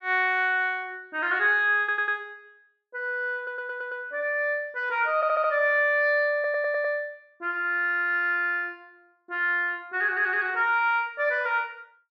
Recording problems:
audio stuttering; 4 times, first at 2 s

